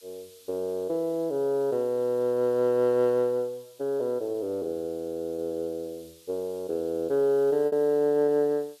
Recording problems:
hiss; SNR 27 dB
packet loss; 1.7% of the sound replaced, filled with repeated pitch periods

